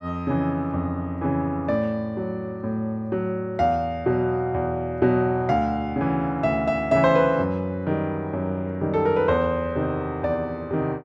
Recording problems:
none

